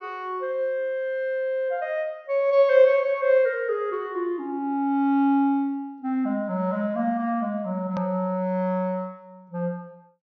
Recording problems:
treble missing; nothing above 6.3 kHz
click at an edit; at 8 s

